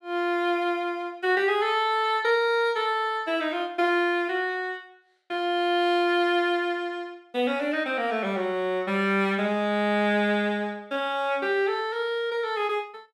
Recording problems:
none

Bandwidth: 15 kHz